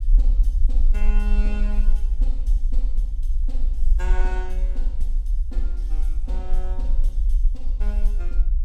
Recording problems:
rumble; below 40 Hz, SNR -15 dB

